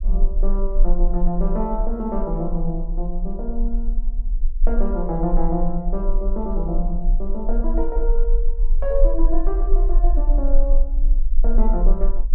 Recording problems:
rumble; below 34 Hz, strongest tone 22 Hz, SNR -3 dB

